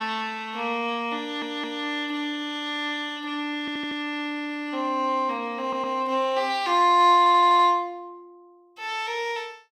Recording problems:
stutter; 4 times, first at 1 s

